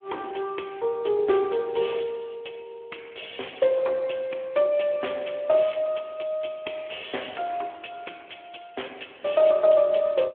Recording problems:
phone line; 300 Hz to 3.3 kHz, Speex

